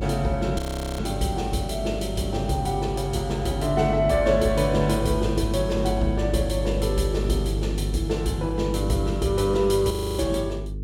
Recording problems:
hum; 50 Hz, harmonics up to 450 Hz, SNR 6 dB
audio freezing; at 0.5 s and at 10 s

